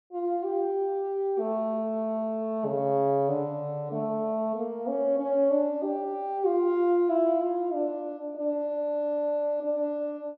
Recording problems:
none

